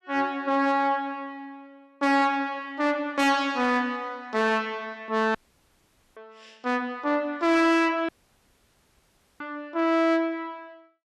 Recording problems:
distortion; soft clipping, signal-to-distortion ratio 11 dB
dropout; at 5.5 s for 1 s and at 8 s for 1.5 s

